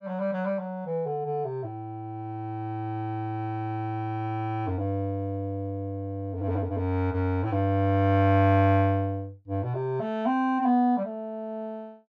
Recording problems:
none

